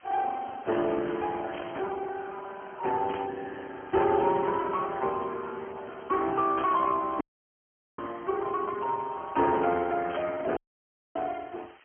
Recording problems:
telephone audio; 240 Hz to 3.3 kHz, Speex
hiss; SNR 27 dB
burst of static; 4 times, first at 1.5 s; peak -7 dB vs average level
audio cutting out; at 7 s for 1 s and at 11 s for 0.5 s

